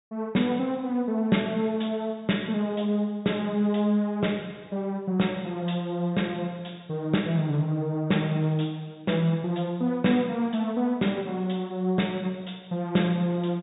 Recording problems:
low-pass filter; nothing above 4 kHz

